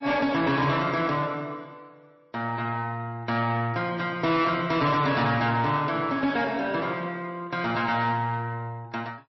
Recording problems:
lossy compression; MP3, log-spectral distance 2 dB, nothing above 5.7 kHz
distortion; soft clipping, signal-to-distortion ratio 11 dB

